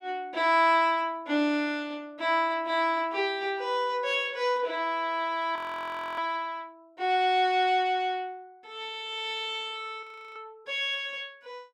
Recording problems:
frozen audio; at 5.5 s for 0.5 s and at 10 s

